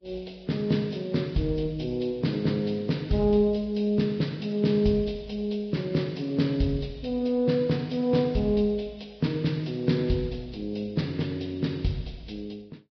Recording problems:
lossy compression; Vorbis, log-spectral distance 3 dB, nothing above 5.3 kHz

